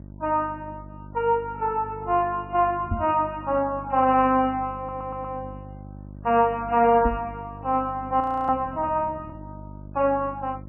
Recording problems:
lossy compression; MP3, log-spectral distance 2 dB, nothing above 2.6 kHz
hum; 50 Hz, harmonics up to 650 Hz, SNR 17 dB
knock on the microphone; at 3 s and at 7 s; peak +1 dB vs average level
audio stuttering; at 5 s
frozen audio; at 8 s

